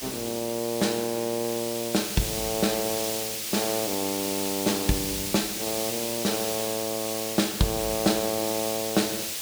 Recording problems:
background hiss; SNR 2 dB

